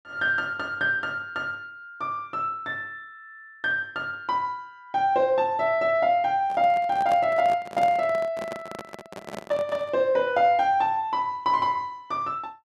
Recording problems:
handling noise; from 6.5 to 10 s; peak -4 dB vs average level

